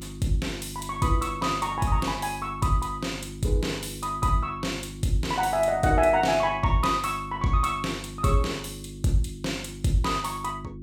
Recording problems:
electrical hum; 50 Hz, harmonics up to 350 Hz, SNR 13 dB

